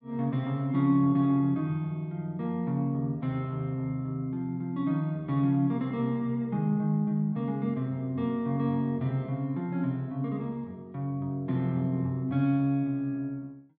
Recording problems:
none

